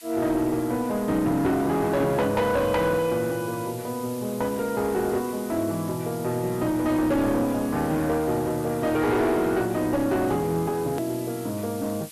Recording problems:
distorted audio; hard clipping, uneven, signal-to-distortion ratio 9 dB
background hiss; slope +3 dB per octave, SNR 17 dB
hard cut with a click; at 11 s

